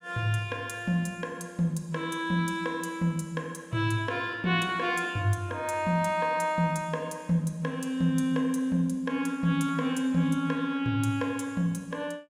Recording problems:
none

